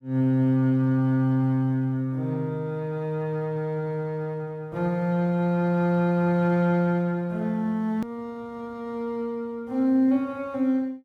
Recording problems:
hard cut with a click; at 8 s

